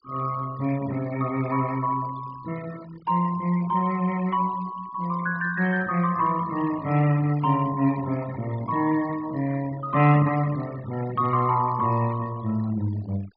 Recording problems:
low-pass filter; nothing above 5.5 kHz
noise reduction artefacts; signal-to-artefact ratio 19 dB

